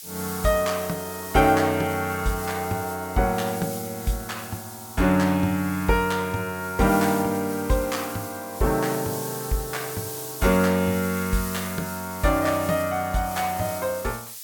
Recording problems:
background hiss; slope +5 dB per octave, SNR 11 dB

